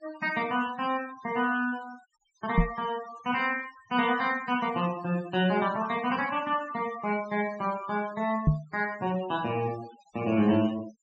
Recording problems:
treble cut off; nothing above 8 kHz
noise reduction artefacts; signal-to-artefact ratio 17 dB
microphone thump; at 2.5 s and at 8.5 s; peak +10 dB vs average level

